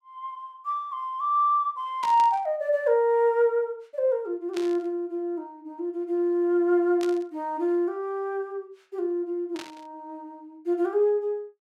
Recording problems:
burst of static; 4 times, first at 2 s; peak -8 dB vs average level

